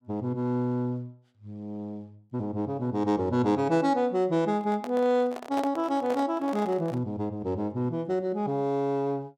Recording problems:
handling noise; from 4.5 to 7 s; peak -3 dB vs average level

